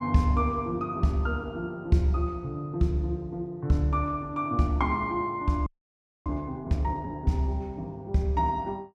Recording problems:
audio freezing; at 5.5 s for 0.5 s

